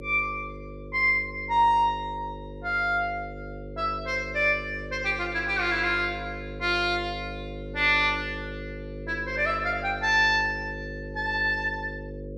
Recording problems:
hum; 50 Hz, harmonics up to 550 Hz, SNR 13 dB

